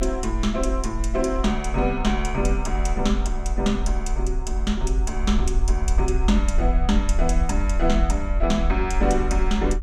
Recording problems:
rumble; below 48 Hz, SNR 1 dB

